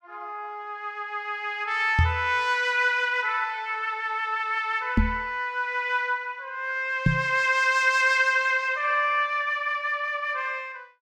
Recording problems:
knock on the microphone; at 2 s, at 5 s and at 7 s; peak +7 dB vs average level

